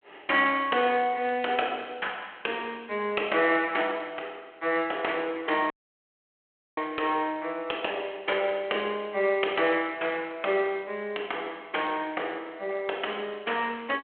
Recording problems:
phone line; 320 Hz to 3.3 kHz, G.726
audio cutting out; at 5.5 s for 1 s

